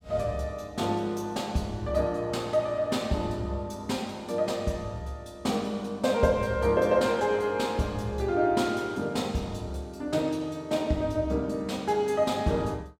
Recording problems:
none

